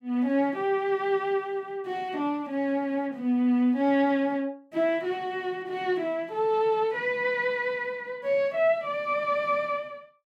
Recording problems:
none

